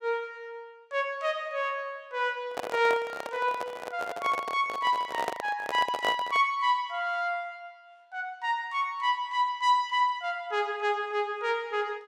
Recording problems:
handling noise; from 2.5 to 6.5 s; peak +2 dB vs average level

